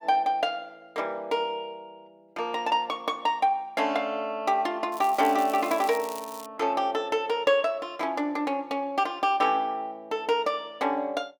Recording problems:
crackle; from 5 to 6.5 s; loose cable, SNR 16 dB

